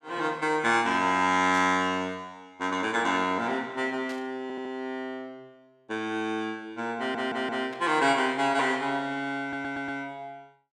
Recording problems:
burst of static; at 1.5 s, at 4 s and at 7.5 s; peak -13 dB vs average level
audio stuttering; at 4.5 s, at 7 s and at 9.5 s

